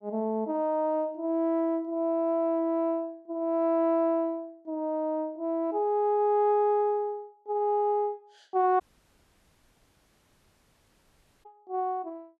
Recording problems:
audio cutting out; at 9 s for 2.5 s

